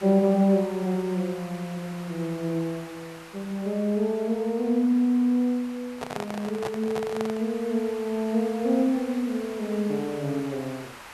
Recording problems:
hiss; SNR 17 dB
microphone handling noise; from 6 to 7.5 s; peak -3 dB vs average level

